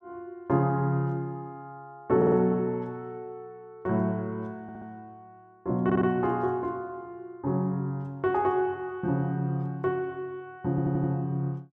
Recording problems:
stutter; 4 times, first at 2 s

